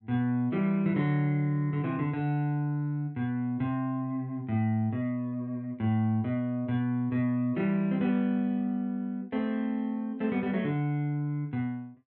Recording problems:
none

